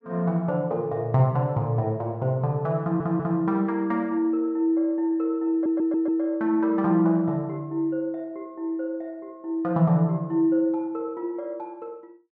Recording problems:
stutter; at 3 s and at 5.5 s

